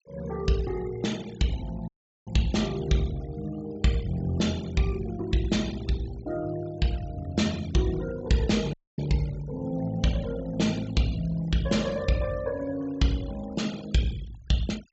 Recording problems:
low-pass filter; nothing above 7.7 kHz
denoising artefacts; signal-to-artefact ratio 18 dB
dropout; at 2 s and at 8.5 s

